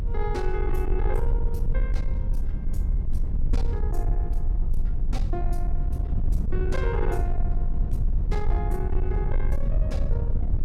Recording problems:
distorted audio; soft clipping, signal-to-distortion ratio 11 dB
low-frequency rumble; below 56 Hz, strongest tone 20 Hz, SNR -7 dB

